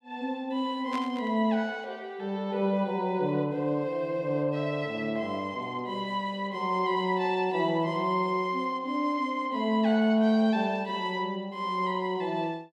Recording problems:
static burst; at 1 s; peak -8 dB vs average level

